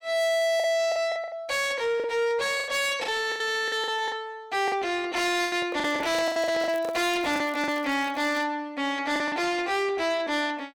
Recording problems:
distortion; soft clipping, signal-to-distortion ratio 8 dB
lost packets; 10% of the sound replaced, filled with the last packet
handling noise; from 5.5 to 7 s; peak -2 dB vs average level
crackle; from 6 to 8.5 s; loose cable, SNR 25 dB

